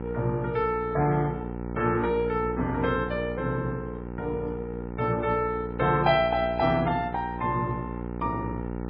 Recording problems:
codec artefacts; MP3, log-spectral distance 2 dB, nothing above 4.9 kHz
electrical hum; 60 Hz, harmonics up to 1.7 kHz, SNR 8 dB

